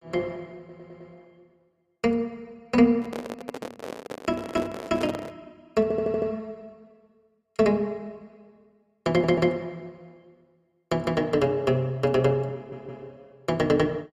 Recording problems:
audio stuttering; 4 times, first at 0.5 s
handling noise; from 3 to 5.5 s; peak -4 dB vs average level

